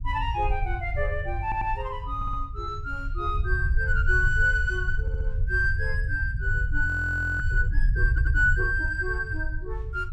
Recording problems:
low-frequency rumble; below 76 Hz, SNR 2 dB
stutter; 4 times, first at 1.5 s
frozen audio; at 7 s for 0.5 s

